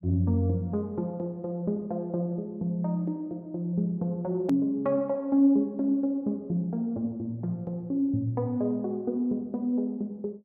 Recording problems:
click at an edit; at 4.5 s

